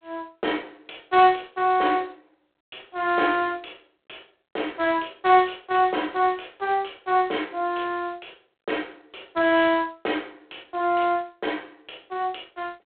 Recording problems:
telephone audio; 260 Hz to 3.7 kHz, G.726

